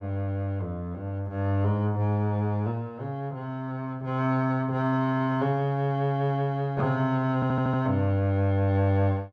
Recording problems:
audio stuttering; at 7.5 s

